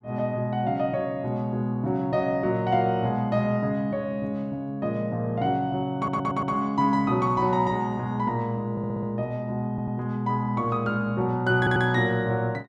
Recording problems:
stutter; 4 times, first at 6 s

